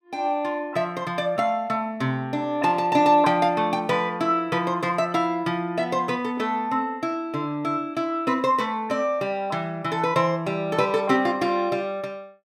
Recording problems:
none

